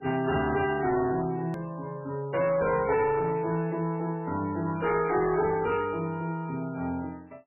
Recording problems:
lossy compression; MP3, log-spectral distance 3 dB, nothing above 2.4 kHz
distortion; hard clipping, uneven, signal-to-distortion ratio 11 dB
click at an edit; at 1.5 s

